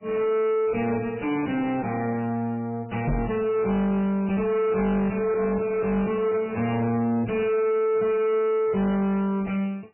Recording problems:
lossy compression; MP3, log-spectral distance 3 dB, nothing above 2.4 kHz
distorted audio; soft clipping, signal-to-distortion ratio 7 dB
microphone thump; at 3 s; peak +3 dB vs average level

